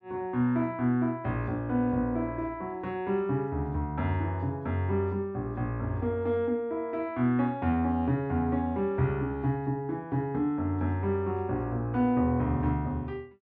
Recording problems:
none

